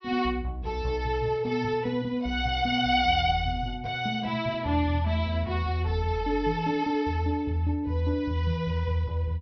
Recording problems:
low-pass filter; nothing above 6 kHz

